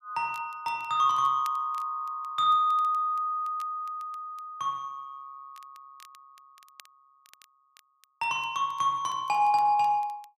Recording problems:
crackle; vinyl, SNR 30 dB

